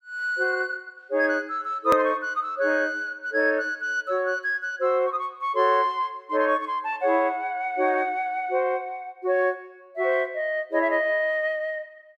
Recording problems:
hard cut with a click; at 2 s

